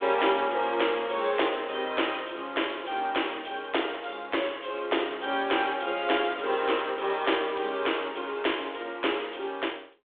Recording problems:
phone line; 300 Hz to 3.6 kHz, G.726

